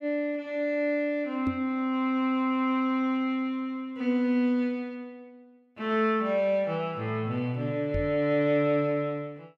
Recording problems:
microphone thump; at 1.5 s and at 8 s; peak +1 dB vs average level

